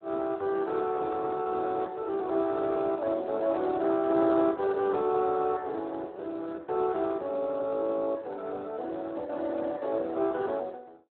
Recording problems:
telephone audio; 320 Hz to 2 kHz, Speex

